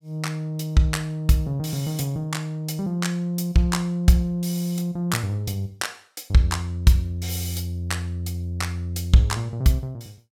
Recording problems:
none

